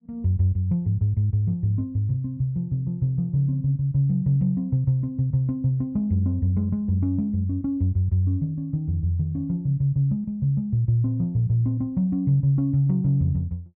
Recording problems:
none

